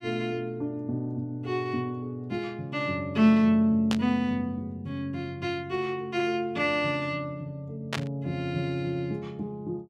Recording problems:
burst of static; at 4 s and at 8 s; peak +2 dB vs average level

